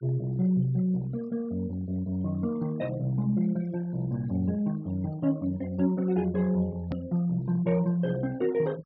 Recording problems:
low-pass filter; nothing above 5.5 kHz
noise reduction artefacts; signal-to-artefact ratio 23 dB
click at an edit; at 7 s

